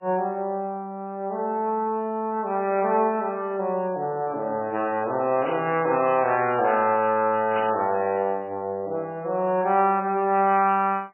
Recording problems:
lossy compression; MP3, log-spectral distance 2 dB, nothing above 2.6 kHz
static burst; at 5.5 s and at 7.5 s; peak -7 dB vs average level

